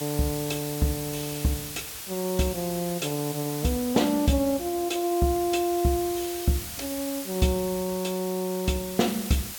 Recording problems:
hiss; slope +1 dB per octave, SNR 8 dB

